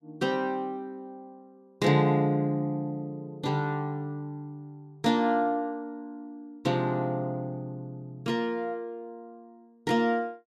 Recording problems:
none

